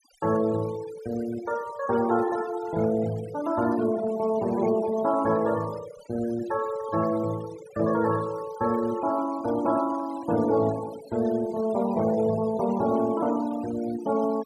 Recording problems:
noise reduction artefacts; signal-to-artefact ratio 18 dB

